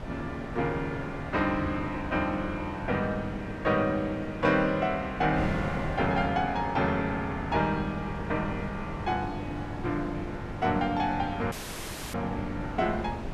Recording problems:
wind noise; below 550 Hz, SNR 9 dB
dropout; at 12 s for 0.5 s

